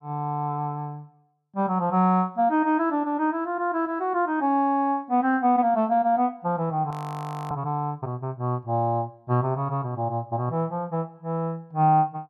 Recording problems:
audio freezing; at 7 s for 0.5 s

